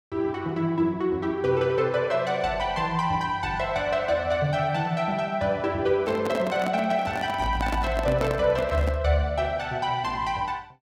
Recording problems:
handling noise; from 6 to 9 s; peak -1 dB vs average level

